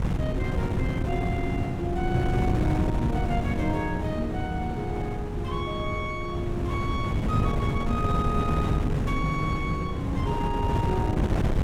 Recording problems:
wind on the microphone; below 220 Hz, SNR -2 dB

